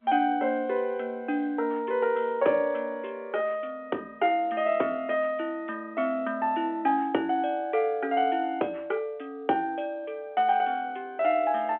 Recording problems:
phone line; 260 Hz to 3.3 kHz, G.711

